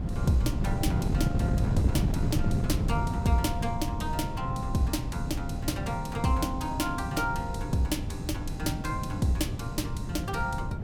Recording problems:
wind on the microphone; below 180 Hz, SNR 0 dB

